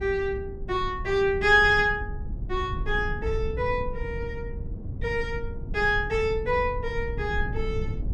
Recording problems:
rumble; below 100 Hz, SNR 9 dB

